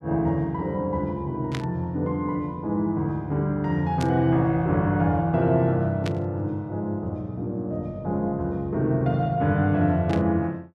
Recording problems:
static burst; 4 times, first at 1.5 s; peak -5 dB vs average level

